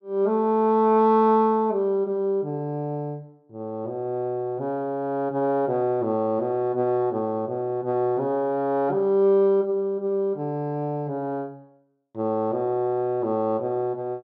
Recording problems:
none

